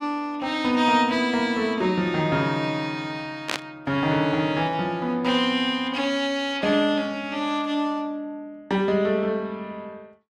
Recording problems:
static burst; at 3.5 s; peak +2 dB vs average level

